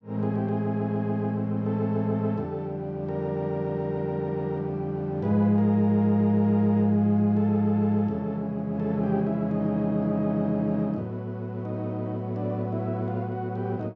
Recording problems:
none

